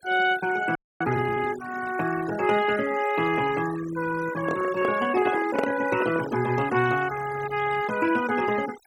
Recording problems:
noise reduction artefacts; signal-to-artefact ratio 13 dB
audio freezing; at 1 s
handling noise; from 4.5 to 6.5 s; peak +3 dB vs average level

